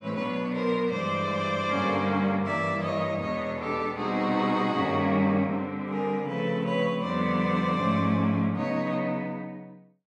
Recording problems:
none

